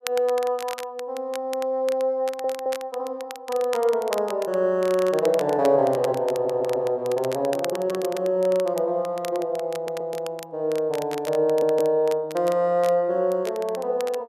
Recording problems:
crackle; vinyl, SNR 17 dB
stutter; 4 times, first at 2 s

